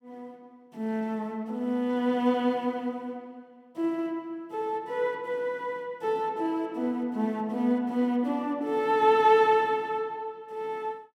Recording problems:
none

